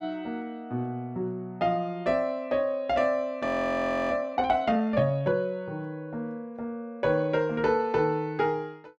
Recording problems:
frozen audio; at 3.5 s for 0.5 s

